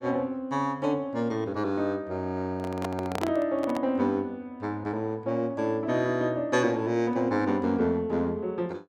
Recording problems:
handling noise; from 2.5 to 4 s; peak 0 dB vs average level

